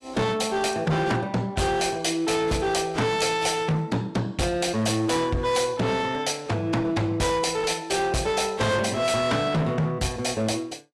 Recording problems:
lossy compression; AAC, log-spectral distance 3 dB, nothing above 11.6 kHz
distorted audio; hard clipping, uneven, signal-to-distortion ratio 7 dB

